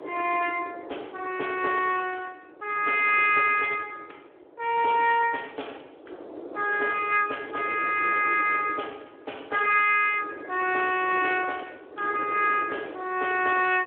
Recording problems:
telephone audio; 300 Hz to 3.4 kHz, Speex
wind on the microphone; below 600 Hz, SNR 17 dB

